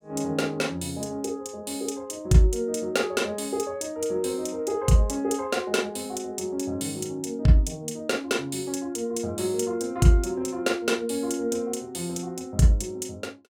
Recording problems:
none

